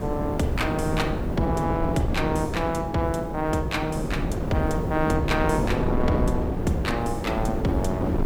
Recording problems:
background hiss; slope -4 dB per octave, SNR 26 dB
wind noise; below 380 Hz, SNR 1 dB

